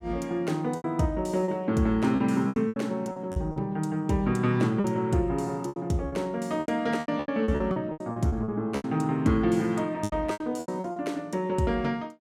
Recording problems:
lost packets; 13% of the sound replaced, filled with repeated pitch periods

